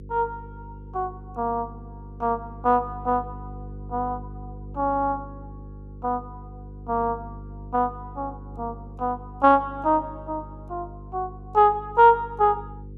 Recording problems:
electrical hum; 50 Hz, harmonics up to 500 Hz, SNR 16 dB

